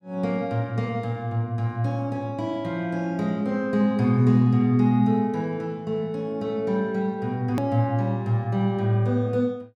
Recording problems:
click at an edit; at 7.5 s

